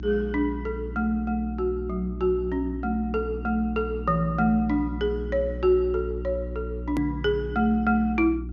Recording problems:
low-pass filter; nothing above 6.8 kHz
electrical hum; 60 Hz, harmonics up to 360 Hz, SNR 9 dB
click at an edit; at 7 s

